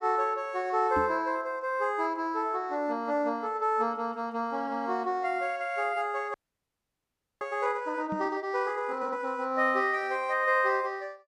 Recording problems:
microphone thump; at 1 s and at 8 s; peak -2 dB vs average level
audio freezing; at 6.5 s for 1 s

